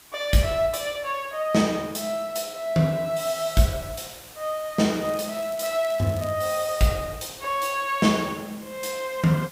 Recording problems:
hiss; slope 0 dB per octave, SNR 19 dB
crackling; from 5 to 6.5 s; loose cable, SNR 21 dB

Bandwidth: 15.5 kHz